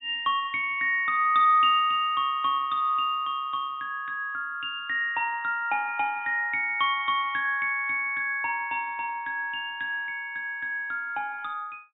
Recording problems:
low-pass filter; nothing above 4 kHz

